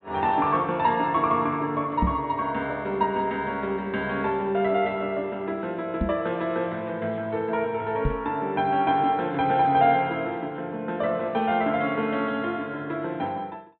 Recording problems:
treble cut off; nothing above 4 kHz
microphone bump; at 2 s, at 6 s and at 8 s; peak +4 dB vs average level

